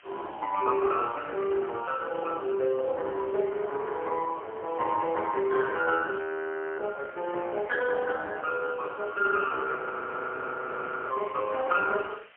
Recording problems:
telephone audio; 340 Hz to 3.3 kHz, AMR-NB, then MP3
hiss; SNR 27 dB
frozen audio; at 6 s for 0.5 s and at 10 s for 1.5 s

